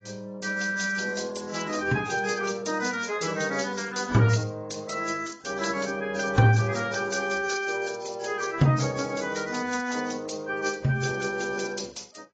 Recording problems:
lossy compression; AAC, then AAC, log-spectral distance 7 dB, nothing above 7.3 kHz

